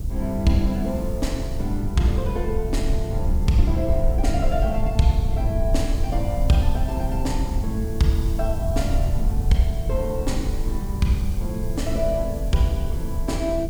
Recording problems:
hiss; SNR 21 dB
low-frequency rumble; below 74 Hz, SNR 2 dB

